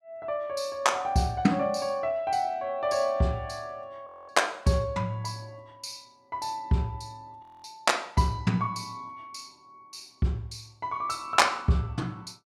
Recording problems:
frozen audio; at 4 s and at 7.5 s

